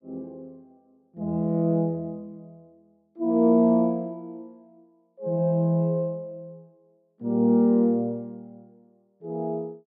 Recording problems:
none

